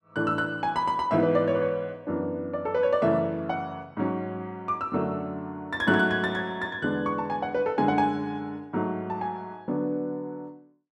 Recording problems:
none

